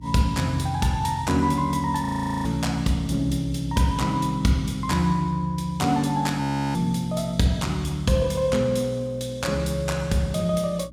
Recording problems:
hum; 60 Hz, harmonics up to 300 Hz, SNR 20 dB
audio freezing; at 2 s and at 6.5 s

